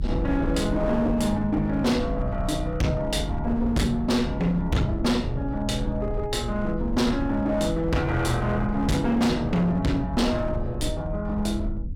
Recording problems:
distortion; hard clipping, uneven, signal-to-distortion ratio 7 dB
low-frequency rumble; below 92 Hz, SNR 8 dB

